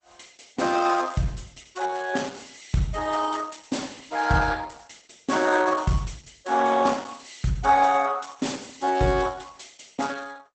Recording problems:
codec artefacts; Opus, log-spectral distance 7 dB, nothing above 8.2 kHz

